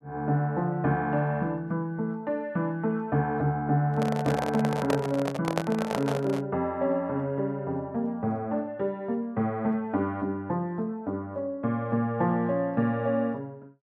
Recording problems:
microphone handling noise; from 4 to 6.5 s; peak +4 dB vs average level

